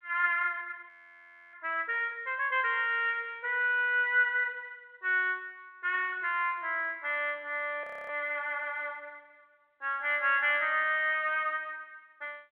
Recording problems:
phone line; 340 Hz to 3.3 kHz, G.726
frozen audio; at 1 s for 0.5 s and at 8 s

